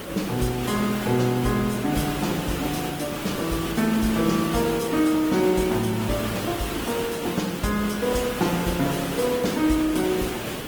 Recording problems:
lossy codec; Opus, log-spectral distance 6 dB
hiss; slope -5 dB per octave, SNR 5 dB

